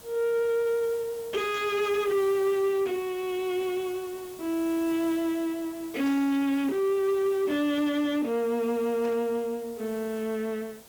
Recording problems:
lossy codec; Speex, log-spectral distance 2 dB
distortion; soft clipping, signal-to-distortion ratio 12 dB
background hiss; SNR 20 dB
static burst; at 1.5 s, at 6 s and at 9 s; peak -12 dB vs average level

